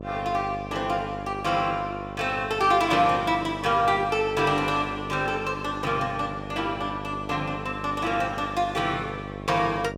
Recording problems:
hum; 50 Hz, harmonics up to 1.2 kHz, SNR 12 dB

